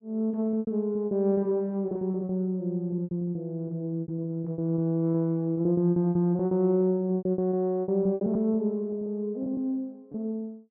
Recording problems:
packet loss; 15% of the sound replaced, filled with repeated pitch periods

